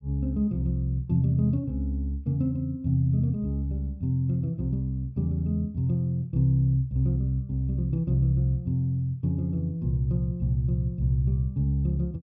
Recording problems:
none

